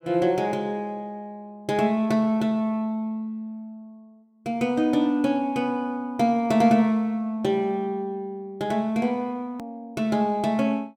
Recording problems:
hard cut with a click; at 9.5 s

